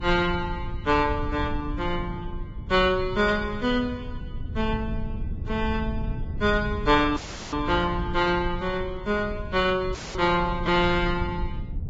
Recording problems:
codec artefacts; Vorbis, log-spectral distance 3 dB, nothing above 7.3 kHz
rumble; below 110 Hz, SNR 9 dB
dropout; at 7 s and at 10 s

